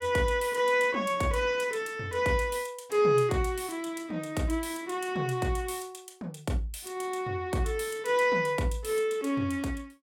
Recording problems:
none

